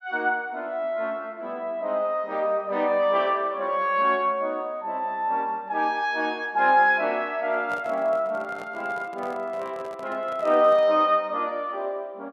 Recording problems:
microphone handling noise; from 7.5 to 11 s; peak -9 dB vs average level

